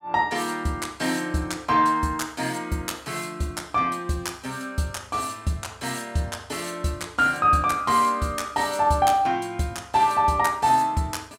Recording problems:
none

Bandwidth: 16.5 kHz